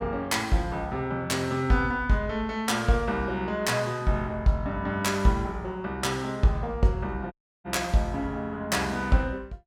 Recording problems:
dropout; at 7.5 s

